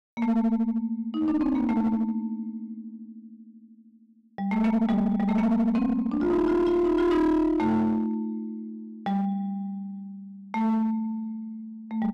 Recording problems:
distorted audio; hard clipping, uneven, signal-to-distortion ratio 10 dB

